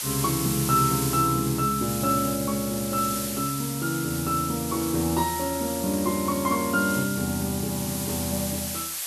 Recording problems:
hiss; SNR 5 dB

